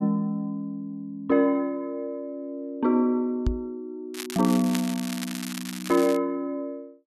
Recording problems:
microphone thump; at 3.5 s; peak +4 dB vs average level
crackling; from 4 to 6 s; loose cable, SNR 10 dB

